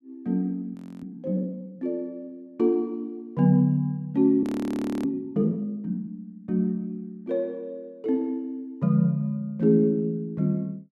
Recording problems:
frozen audio; at 1 s and at 4.5 s for 0.5 s

